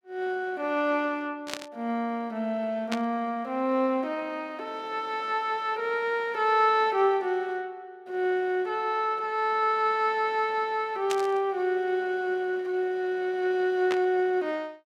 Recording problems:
static burst; 4 times, first at 1.5 s; peak -1 dB vs average level

